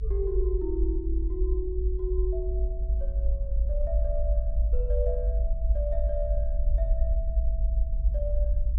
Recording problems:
electrical hum; 50 Hz, harmonics up to 450 Hz, SNR 17 dB
low-frequency rumble; below 54 Hz, SNR -7 dB

